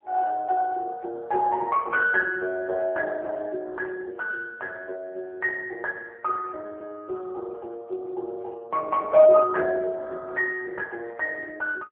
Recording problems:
phone line; 390 Hz to 3 kHz, AMR-NB

